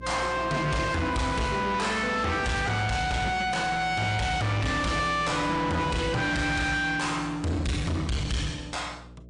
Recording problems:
codec artefacts; MP3, log-spectral distance 3 dB, nothing above 9 kHz
distortion; soft clipping, signal-to-distortion ratio 6 dB
mains hum; 60 Hz, harmonics up to 660 Hz, SNR 18 dB

